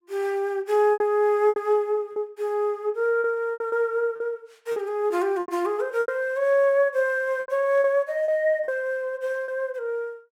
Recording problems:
packet loss; 9% of the sound replaced, filled with repeated pitch periods

